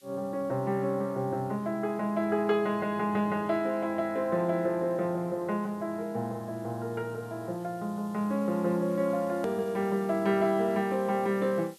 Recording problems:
hiss; SNR 27 dB
edit click; at 9.5 s

